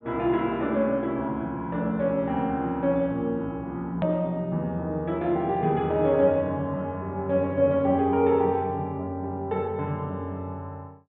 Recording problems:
treble cut off; nothing above 4 kHz
click at an edit; at 4 s

